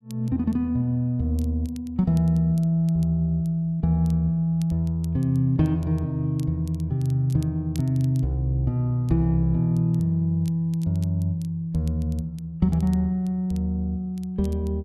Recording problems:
crackling; vinyl, SNR 29 dB

